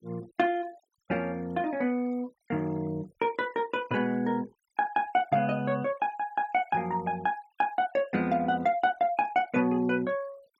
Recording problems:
denoising artefacts; signal-to-artefact ratio 26 dB

